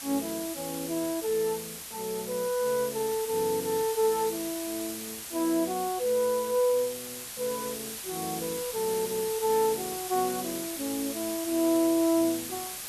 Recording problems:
background hiss; slope +1 dB per octave, SNR 7 dB

